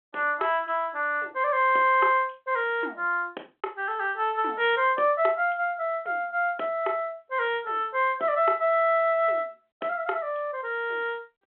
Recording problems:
telephone audio; 300 Hz to 3.5 kHz, G.726

